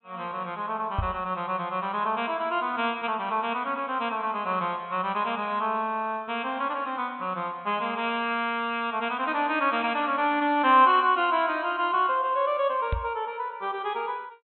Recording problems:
low-pass filter; nothing above 4 kHz
microphone bump; at 1 s and at 13 s; peak +2 dB vs average level

